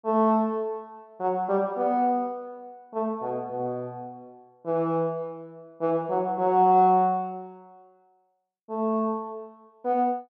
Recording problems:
none

